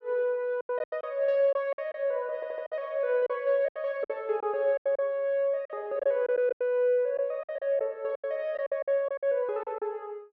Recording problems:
packet loss; 12% of the sound replaced, filled with silence
stutter; at 2.5 s

